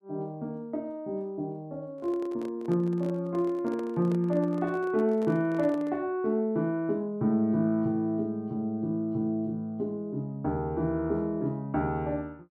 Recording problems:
handling noise; from 2 to 6 s; peak -8 dB vs average level

